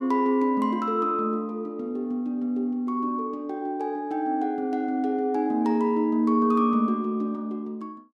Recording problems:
none

